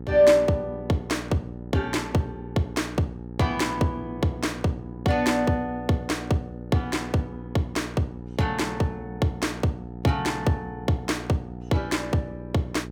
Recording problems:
hum; 60 Hz, harmonics up to 900 Hz, SNR 12 dB

